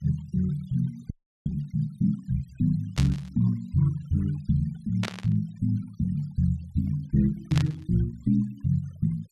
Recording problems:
noise reduction artefacts; signal-to-artefact ratio 27 dB
audio freezing; at 1 s
burst of static; at 3 s, at 5 s and at 7.5 s; peak 0 dB vs average level

